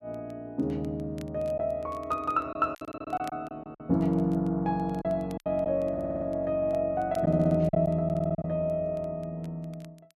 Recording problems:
crackling; vinyl, SNR 30 dB
lost packets; 5% of the sound replaced, filled with silence
stutter; 4 times, first at 3 s

